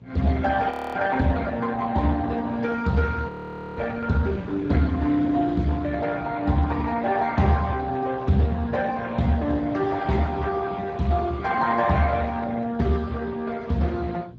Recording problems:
lossy compression; Speex, log-spectral distance 4 dB
hum; 60 Hz, harmonics up to 420 Hz, SNR 18 dB
wind on the microphone; below 330 Hz, SNR 18 dB
audio freezing; at 0.5 s and at 3.5 s

